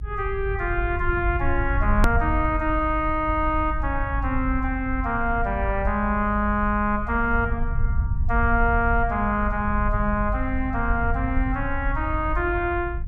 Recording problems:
rumble; below 78 Hz, SNR 4 dB
hard cut with a click; at 2 s

